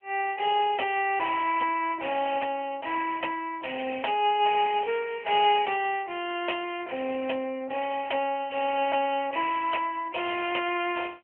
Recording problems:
telephone audio; 280 Hz to 3.1 kHz, AMR-NB

